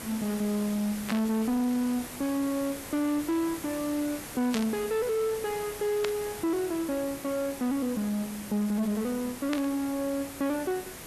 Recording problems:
distorted audio; soft clipping, signal-to-distortion ratio 12 dB
background hiss; slope -3 dB per octave, SNR 11 dB
burst of static; 4 times, first at 1 s; peak 0 dB vs average level

